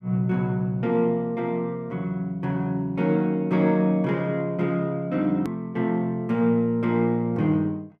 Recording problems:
edit click; at 5.5 s

